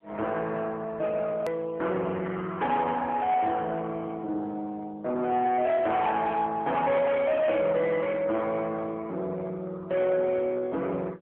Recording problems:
telephone audio; 240 Hz to 3.4 kHz, AMR-NB
distorted audio; soft clipping, signal-to-distortion ratio 12 dB
edit click; at 1.5 s

